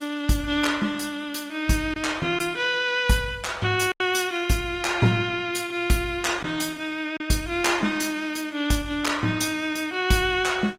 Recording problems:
lossy codec; Opus, log-spectral distance 4 dB, nothing above 16 kHz
packet loss; 1.4% of the sound replaced, filled with silence

